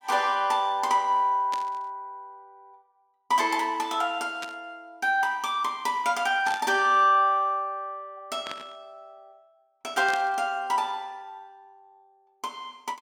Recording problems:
static burst; 5 times, first at 1.5 s; peak -6 dB vs average level

